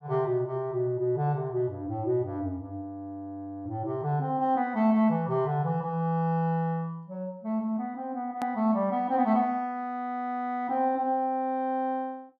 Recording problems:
click at an edit; at 8.5 s

